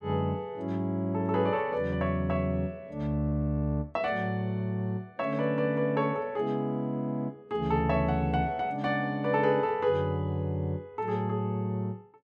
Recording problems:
none

